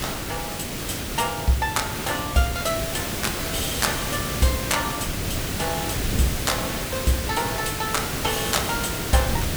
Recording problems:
background hiss; SNR 1 dB
wind on the microphone; below 170 Hz, SNR 13 dB

